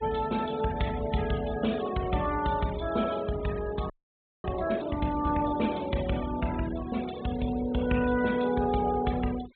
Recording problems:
treble missing; nothing above 4 kHz
noise reduction artefacts; signal-to-artefact ratio 16 dB
audio freezing; at 4 s for 0.5 s

